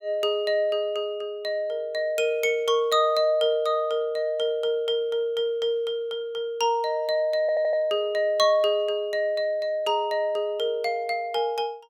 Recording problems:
audio stuttering; at 7.5 s

